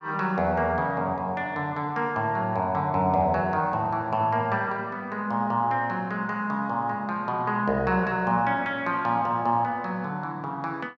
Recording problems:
none

